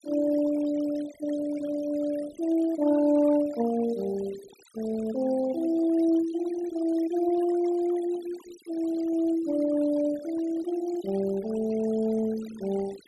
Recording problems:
noise reduction artefacts; signal-to-artefact ratio 20 dB

